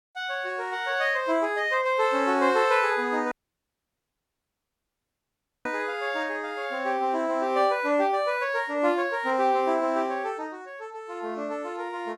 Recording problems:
dropout; at 3.5 s for 2.5 s

